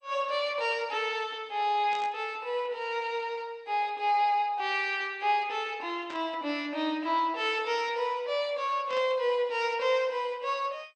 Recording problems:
codec artefacts; MP2, log-spectral distance 2 dB, nothing above 8.2 kHz
burst of static; at 2 s, at 6 s and at 9 s; peak -11 dB vs average level

